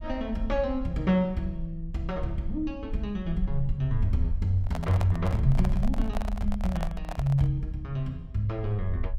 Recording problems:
rumble; below 48 Hz, strongest tone 24 Hz, SNR 8 dB
handling noise; from 4.5 to 7.5 s; peak -2 dB vs average level

